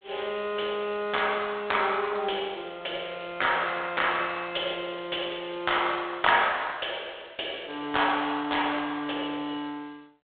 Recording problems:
telephone audio; 220 Hz to 3.7 kHz, G.726

